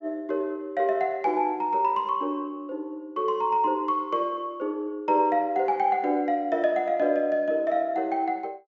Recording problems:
low-pass filter; nothing above 8 kHz

